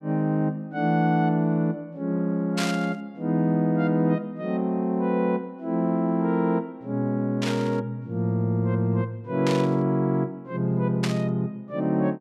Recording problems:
static burst; 4 times, first at 2.5 s; peak -1 dB vs average level

